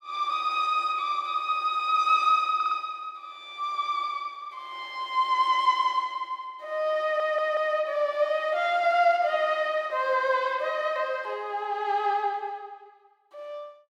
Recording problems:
audio stuttering; at 2.5 s and at 7 s

